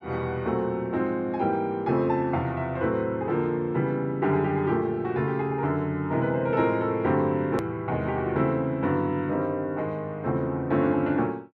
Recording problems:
click at an edit; at 7.5 s

